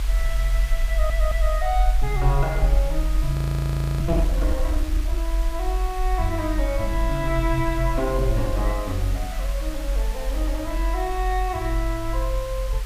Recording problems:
background hiss; slope -1 dB per octave, SNR 11 dB
rumble; below 48 Hz, strongest tone 44 Hz, SNR -1 dB
stutter; at 1 s
frozen audio; at 3.5 s for 0.5 s

